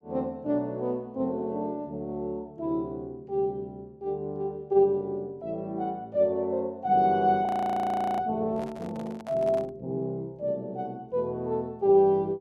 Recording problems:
frozen audio; at 7.5 s for 0.5 s
handling noise; from 8.5 to 9.5 s; peak -11 dB vs average level

